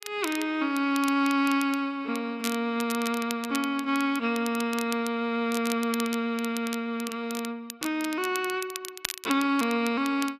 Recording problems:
crackle; vinyl, SNR 11 dB

